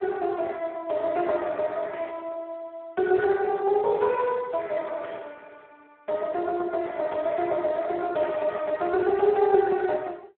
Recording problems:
phone line; 320 Hz to 3.5 kHz, Speex

